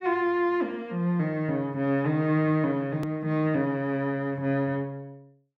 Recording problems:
click at an edit; at 3 s

